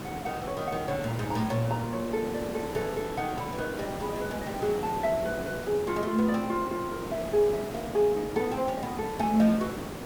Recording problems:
hiss; slope -7 dB per octave, SNR 8 dB

